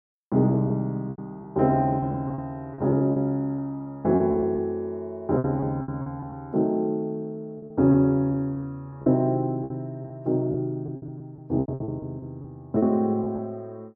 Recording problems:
lost packets; 11% of the sound replaced, filled with repeated pitch periods

